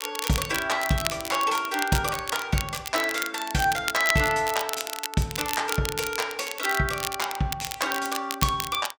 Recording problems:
crackling; vinyl, SNR 6 dB

